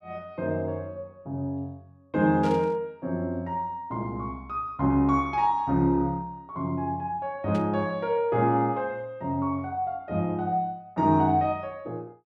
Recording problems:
burst of static; at 2.5 s and at 7.5 s; peak -12 dB vs average level

